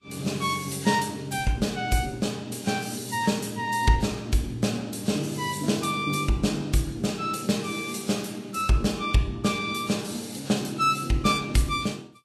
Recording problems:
lossy codec; Vorbis, log-spectral distance 5 dB, nothing above 12.3 kHz

